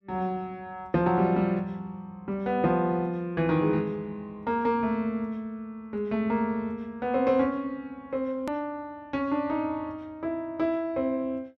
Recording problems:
edit click; at 8.5 s

